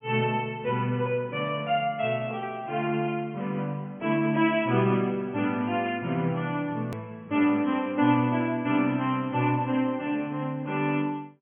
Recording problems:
treble missing; nothing above 3.2 kHz
edit click; at 7 s

